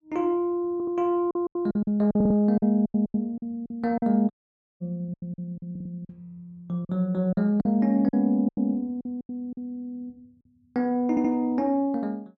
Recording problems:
lost packets; 11% of the sound replaced, filled with silence
stutter; 4 times, first at 0.5 s
dropout; at 4.5 s for 0.5 s

